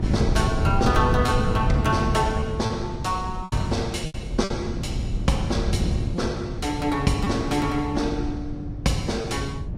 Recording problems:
lossy codec; Vorbis, log-spectral distance 2 dB, nothing above 15.1 kHz
wind on the microphone; below 170 Hz, SNR 2 dB
lost packets; 4% of the sound replaced, filled with repeated pitch periods

